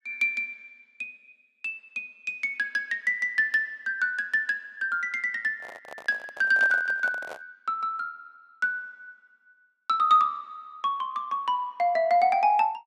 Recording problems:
microphone handling noise; from 5.5 to 7.5 s; peak -9 dB vs average level

